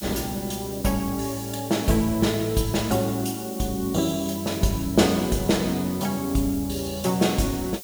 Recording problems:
background hiss; slope +5 dB per octave, SNR 13 dB

